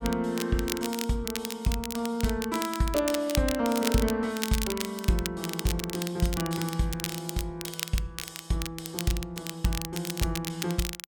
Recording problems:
crackling; vinyl, SNR 6 dB

